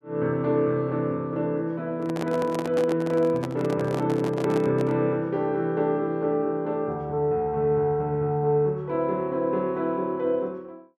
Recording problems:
microphone handling noise; from 2 to 5 s; peak -3 dB vs average level

